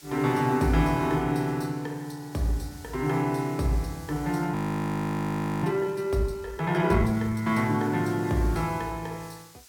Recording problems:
hiss; slope +2 dB per octave, SNR 22 dB
frozen audio; at 4.5 s for 1 s

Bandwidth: 17 kHz